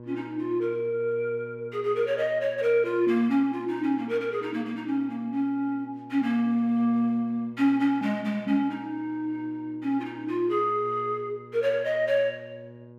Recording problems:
electrical hum; 60 Hz, harmonics up to 1.1 kHz, SNR 20 dB

